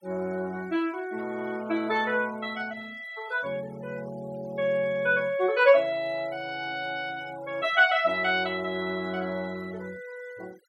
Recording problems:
noise reduction artefacts; signal-to-artefact ratio 23 dB

